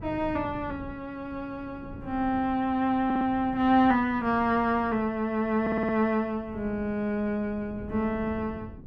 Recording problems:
wind on the microphone; below 240 Hz, SNR 17 dB
audio stuttering; at 3 s and at 5.5 s

